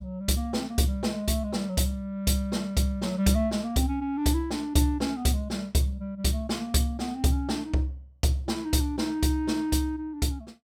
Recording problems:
none

